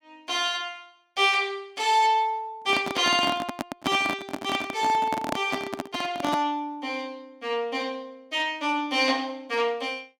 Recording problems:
microphone handling noise; from 2.5 to 6.5 s; peak +2 dB vs average level

